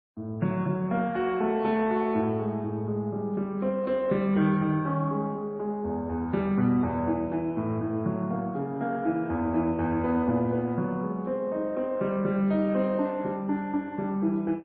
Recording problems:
lossy compression; MP2, then MP3, log-spectral distance 2 dB

